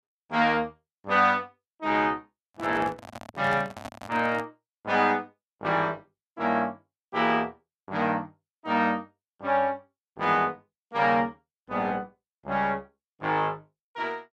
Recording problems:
microphone handling noise; from 2.5 to 4.5 s; peak -7 dB vs average level

